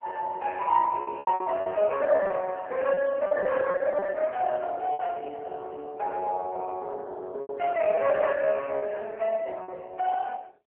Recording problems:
phone line; 300 Hz to 2.8 kHz, AMR-NB
lost packets; 9% of the sound replaced, filled with repeated pitch periods

